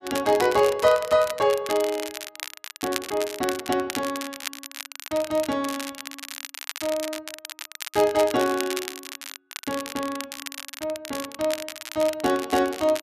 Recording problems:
crackle; vinyl, SNR 10 dB

